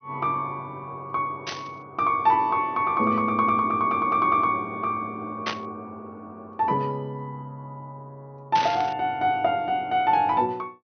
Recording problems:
treble cut off; nothing above 6.2 kHz
static burst; at 1.5 s, at 5.5 s and at 8.5 s; peak 0 dB vs average level

